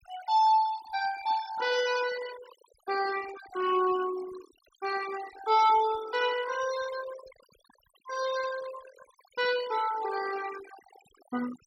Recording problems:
noise reduction artefacts; signal-to-artefact ratio 15 dB

